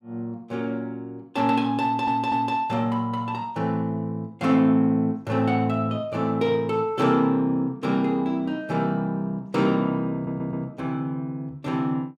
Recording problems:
stutter; at 2 s and at 10 s

